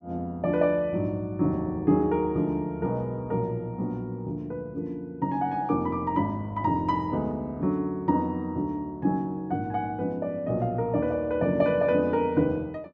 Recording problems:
none

